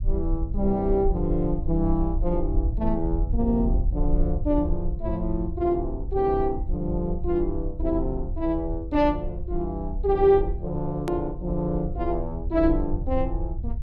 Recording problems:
low-frequency rumble; below 60 Hz, SNR 5 dB
hard cut with a click; at 11 s

